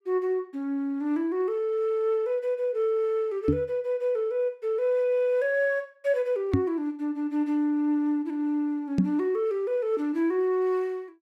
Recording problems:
microphone thump; at 3.5 s, at 6.5 s and at 9 s; peak +8 dB vs average level

